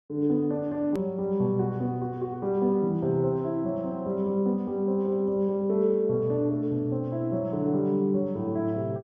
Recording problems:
edit click; at 1 s

